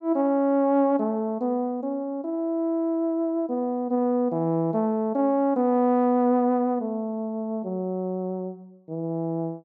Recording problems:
none

